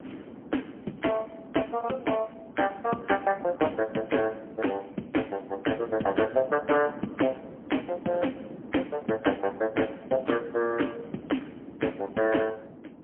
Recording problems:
phone line; 190 Hz to 3.2 kHz, AMR-NB, then MP3
wind noise; below 410 Hz, SNR 15 dB

